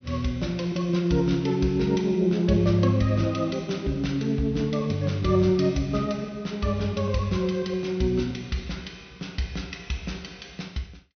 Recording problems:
treble cut off; nothing above 6.1 kHz

